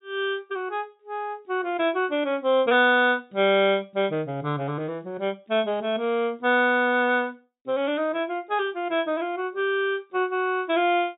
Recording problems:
treble cut off; nothing above 4 kHz

